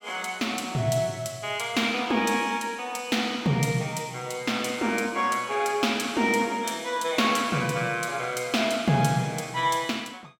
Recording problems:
none

